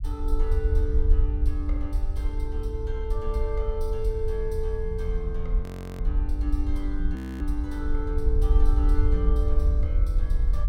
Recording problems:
low-frequency rumble; below 58 Hz, SNR -7 dB
audio freezing; at 5.5 s and at 7 s

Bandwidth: 16 kHz